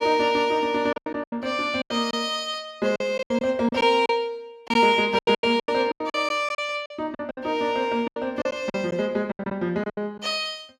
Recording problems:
packet loss; 14% of the sound replaced, filled with silence

